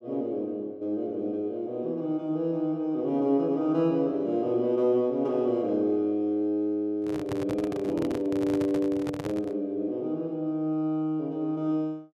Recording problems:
handling noise; from 7 to 9.5 s; peak -4 dB vs average level

